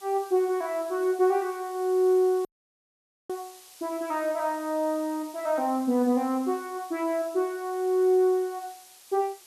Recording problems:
background hiss; slope +2 dB per octave, SNR 22 dB
audio cutting out; at 2.5 s for 1 s

